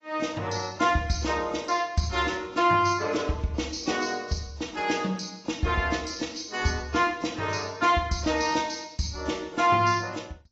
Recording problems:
lossy compression; AAC, log-spectral distance 7 dB, nothing above 6.5 kHz

